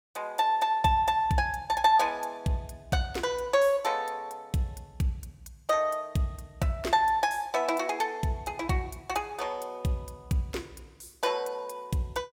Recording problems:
none

